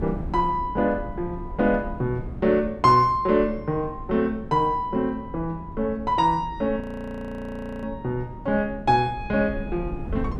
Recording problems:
wind on the microphone; below 180 Hz, SNR 14 dB
audio freezing; at 7 s for 1 s

